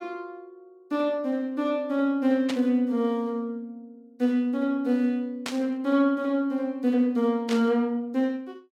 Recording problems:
static burst; at 2.5 s, at 5.5 s and at 7.5 s; peak -3 dB vs average level

